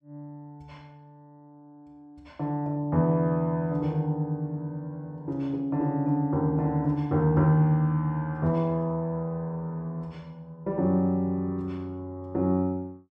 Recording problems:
none

